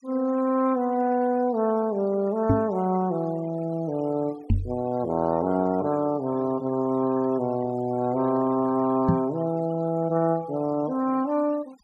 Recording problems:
denoising artefacts; signal-to-artefact ratio 23 dB
knock on the microphone; at 2.5 s, at 4.5 s and at 9 s; peak +7 dB vs average level

